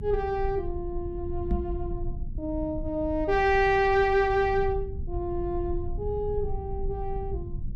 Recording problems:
low-frequency rumble; below 78 Hz, strongest tone 24 Hz, SNR 9 dB
microphone thump; at 1.5 s; peak 0 dB vs average level

